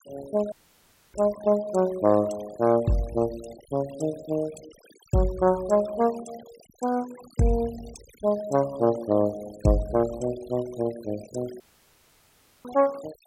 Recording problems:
denoising artefacts; signal-to-artefact ratio 21 dB
dropout; at 0.5 s for 0.5 s and at 12 s for 1 s

